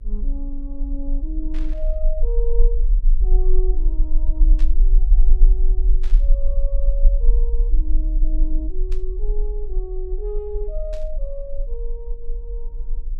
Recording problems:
mains hum; 50 Hz, harmonics up to 600 Hz, SNR 19 dB
rumble; below 36 Hz, strongest tone 20 Hz, SNR -12 dB
static burst; 5 times, first at 1.5 s; peak -5 dB vs average level

